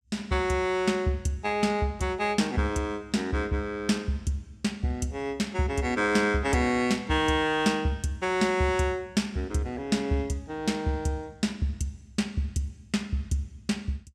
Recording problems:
none

